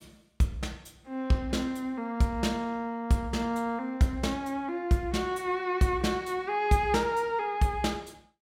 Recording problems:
none

